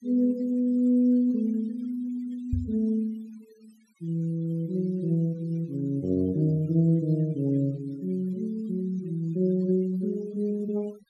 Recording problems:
noise reduction artefacts; signal-to-artefact ratio 27 dB
knock on the microphone; at 2.5 s; peak +3 dB vs average level

